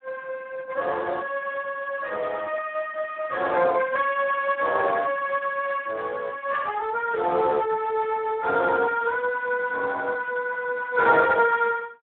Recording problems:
telephone audio; 240 Hz to 3.3 kHz, Speex

